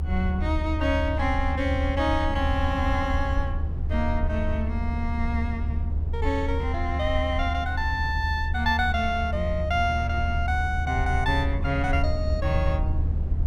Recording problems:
low-frequency rumble; below 78 Hz, strongest tone 76 Hz, SNR 0 dB

